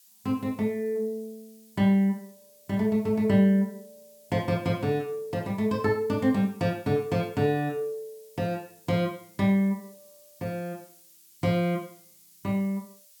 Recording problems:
hiss; slope +6 dB per octave, SNR 27 dB

